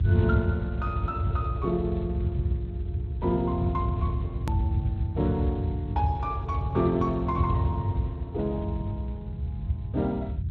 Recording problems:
lossy compression; G.722, then Speex, log-spectral distance 2 dB
electrical hum; 60 Hz, harmonics up to 360 Hz, SNR 22 dB
rumble; below 110 Hz, SNR -1 dB
click at an edit; at 4.5 s

